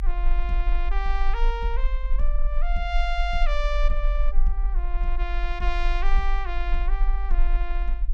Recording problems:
low-frequency rumble; below 44 Hz, strongest tone 22 Hz, SNR -5 dB

